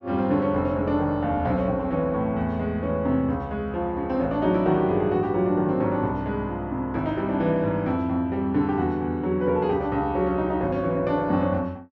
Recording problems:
none

